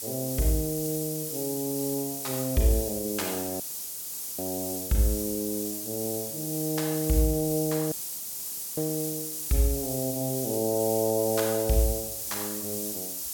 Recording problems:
hiss; SNR 3 dB
audio cutting out; at 3.5 s for 1 s and at 8 s for 1 s

